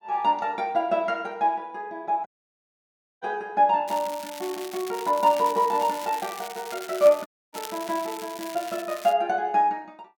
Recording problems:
dropout; at 2.5 s for 1 s and at 7.5 s
crackling; from 4 to 9 s; loose cable, SNR 15 dB

